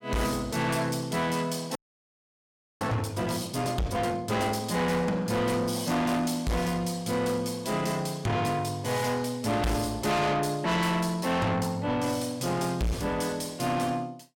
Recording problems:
distorted audio; soft clipping, signal-to-distortion ratio 6 dB
frozen audio; at 2 s for 1 s

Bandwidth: 17 kHz